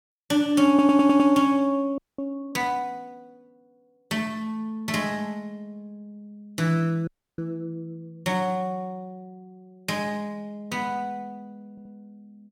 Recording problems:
audio stuttering; at 0.5 s and at 12 s
frozen audio; at 2 s and at 7 s

